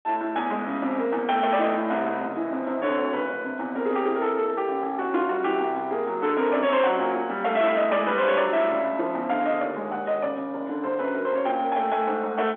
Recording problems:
phone line; 220 Hz to 3.6 kHz, G.711
distorted audio; soft clipping, signal-to-distortion ratio 11 dB

